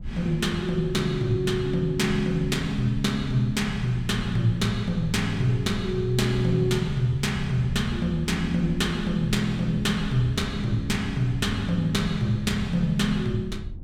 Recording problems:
low-frequency rumble; below 96 Hz, SNR 13 dB

